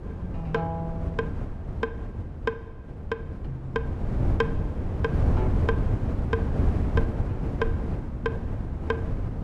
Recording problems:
wind noise; below 170 Hz, SNR -4 dB

